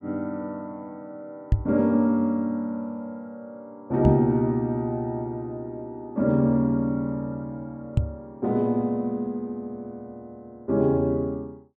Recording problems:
knock on the microphone; at 1.5 s, at 4 s and at 8 s; peak +8 dB vs average level

